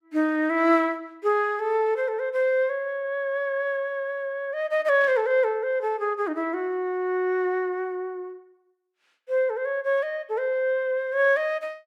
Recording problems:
static burst; at 5 s; peak -15 dB vs average level

